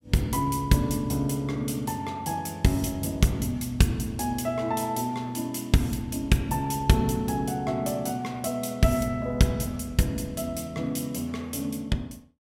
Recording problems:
none

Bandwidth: 16 kHz